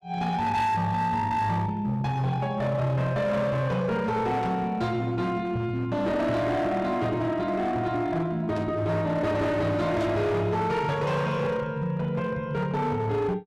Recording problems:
distortion; hard clipping, signal-to-distortion ratio 10 dB
static burst; at 4.5 s, at 8.5 s and at 10 s; peak -13 dB vs average level

